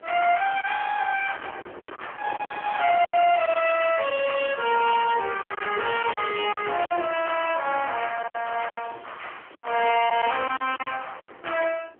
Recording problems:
telephone audio; 280 Hz to 3.3 kHz, AMR-NB
distortion; hard clipping, uneven, signal-to-distortion ratio 10 dB
wind on the microphone; below 1.4 kHz, SNR 20 dB
lost packets; 9% of the sound replaced, filled with silence
crackle; from 2.5 to 7 s and from 7 to 9.5 s; loose cable, SNR 27 dB

